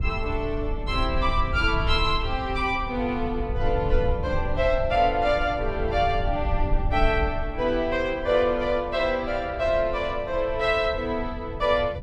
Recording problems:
rumble; below 72 Hz, SNR 7 dB

